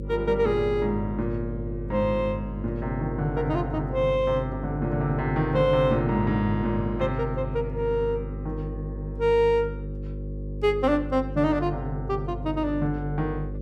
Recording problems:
electrical hum; 50 Hz, harmonics up to 550 Hz, SNR 8 dB

